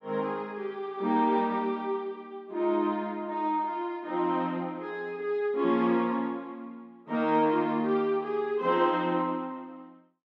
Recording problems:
none

